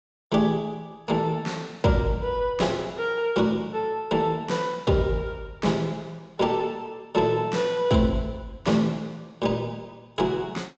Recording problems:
treble missing; nothing above 8 kHz

